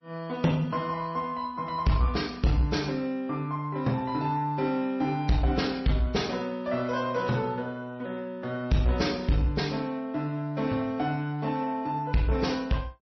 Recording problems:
lossy compression; MP3, log-spectral distance 2 dB, nothing above 5.8 kHz
distorted audio; soft clipping, signal-to-distortion ratio 11 dB

